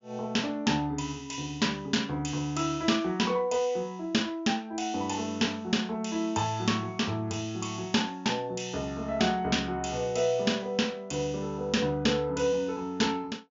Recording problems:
treble missing; nothing above 7.3 kHz

